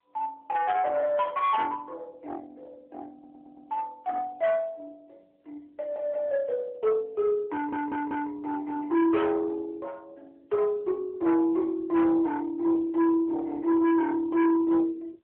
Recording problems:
phone line; 860 Hz to 2.5 kHz, AMR-NB
distortion; soft clipping, signal-to-distortion ratio 8 dB
audio stuttering; at 3 s and at 7.5 s

